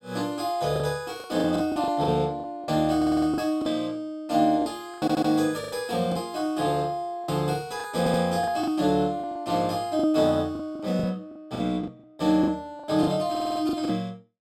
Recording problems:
lost packets; 11% of the sound replaced, filled with the last packet
audio stuttering; 4 times, first at 3 s

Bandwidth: 16 kHz